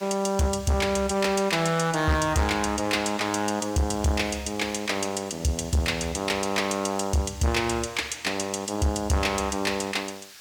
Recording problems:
distortion; hard clipping, signal-to-distortion ratio 10 dB
background hiss; SNR 21 dB

